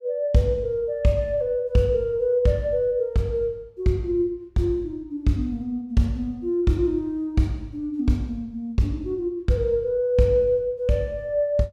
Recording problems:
none

